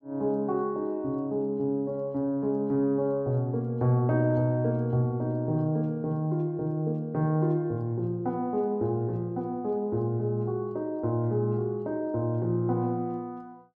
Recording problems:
none

